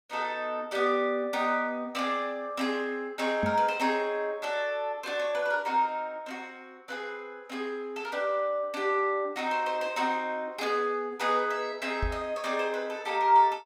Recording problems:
knock on the microphone; at 3.5 s and at 12 s; peak +2 dB vs average level

